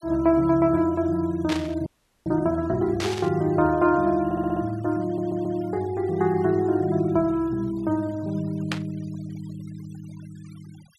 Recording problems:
denoising artefacts; signal-to-artefact ratio 27 dB
burst of static; at 1.5 s, at 3 s and at 8.5 s; peak -1 dB vs average level
audio freezing; at 2 s
audio stuttering; at 4.5 s and at 5 s

